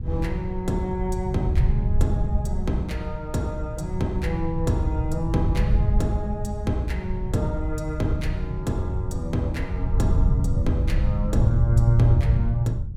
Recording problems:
wind noise; below 100 Hz, SNR 0 dB

